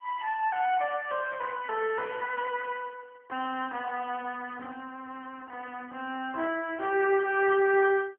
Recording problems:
telephone audio; 300 Hz to 2.9 kHz, AMR-NB

